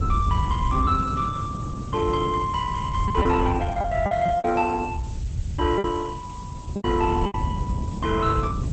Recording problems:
lossy compression; Opus, log-spectral distance 2 dB
background hiss; slope +1 dB per octave, SNR 24 dB
rumble; below 96 Hz, SNR 4 dB
wind on the microphone; below 220 Hz, SNR 9 dB
packet loss; 5% of the sound replaced, filled with repeated pitch periods

